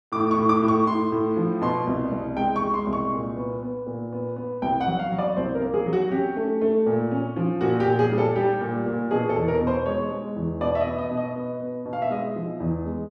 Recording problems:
none

